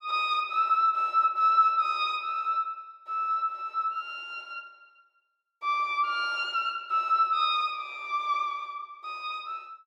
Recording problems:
none

